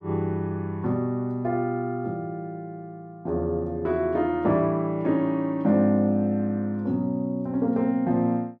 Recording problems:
none

